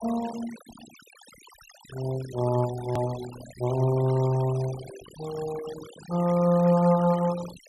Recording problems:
noise reduction artefacts; signal-to-artefact ratio 17 dB
hard cut with a click; at 3 s

